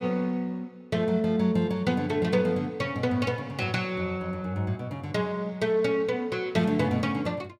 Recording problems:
none

